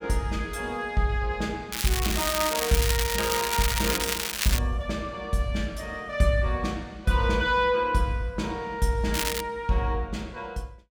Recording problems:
crackle; from 1.5 to 4.5 s and at 9 s; loose cable, SNR 1 dB

